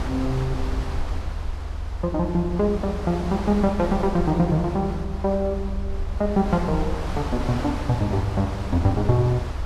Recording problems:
low-frequency rumble; below 78 Hz, SNR 8 dB
wind noise; below 1.6 kHz, SNR 12 dB

